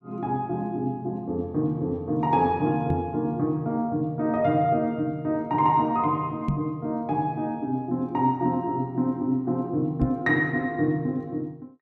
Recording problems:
microphone thump; at 3 s, at 6.5 s and at 10 s; peak +4 dB vs average level

